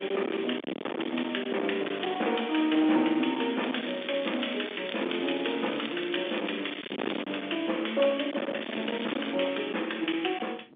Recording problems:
phone line; 220 Hz to 3.6 kHz, G.711
distorted audio; hard clipping, signal-to-distortion ratio 6 dB
wind on the microphone; below 1.6 kHz, SNR 11 dB
crackle; from 3.5 to 7 s and at 8.5 s; loose cable, SNR 13 dB

